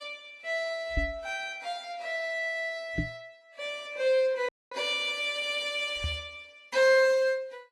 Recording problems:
lossy codec; Vorbis, log-spectral distance 2 dB, nothing above 12.3 kHz
microphone bump; at 1 s, at 3 s and at 6 s; peak +3 dB vs average level
audio cutting out; at 4.5 s

